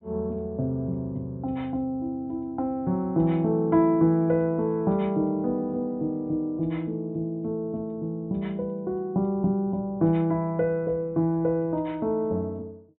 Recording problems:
treble cut off; nothing above 4 kHz

